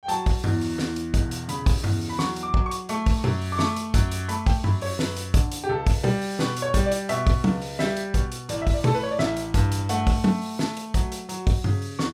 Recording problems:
none

